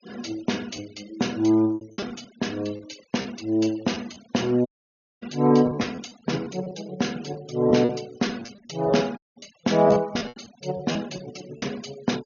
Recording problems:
treble cut off; nothing above 6.8 kHz
noise reduction artefacts; signal-to-artefact ratio 21 dB
packet loss; 8% of the sound replaced, filled with repeated pitch periods
dropout; at 4.5 s for 0.5 s and at 9 s

